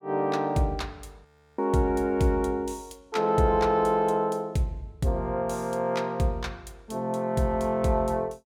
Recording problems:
frozen audio; at 1.5 s

